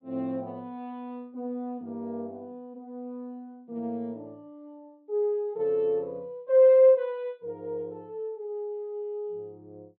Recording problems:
treble cut off; nothing above 4.5 kHz

